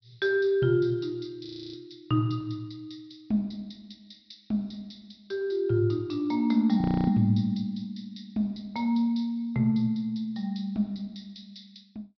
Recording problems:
low-pass filter; nothing above 5.5 kHz
frozen audio; at 1.5 s and at 7 s

